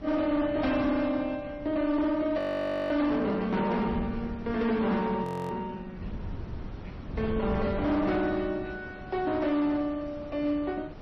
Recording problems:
lossy compression; MP3, then MP2, log-spectral distance 2 dB, nothing above 13.1 kHz
distorted audio; hard clipping, uneven, signal-to-distortion ratio 10 dB
background hiss; slope -7 dB per octave, SNR 21 dB
wind on the microphone; below 210 Hz, SNR 13 dB
frozen audio; at 2.5 s for 0.5 s and at 5 s

